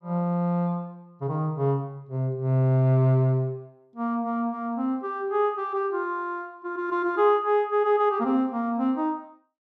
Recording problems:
none

